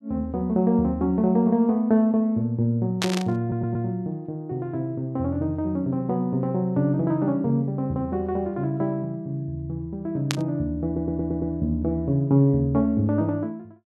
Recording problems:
burst of static; at 3 s and at 10 s; peak +3 dB vs average level
audio stuttering; at 3.5 s and at 11 s

